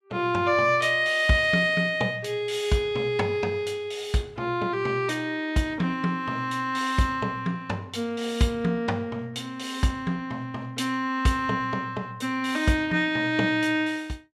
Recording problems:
none

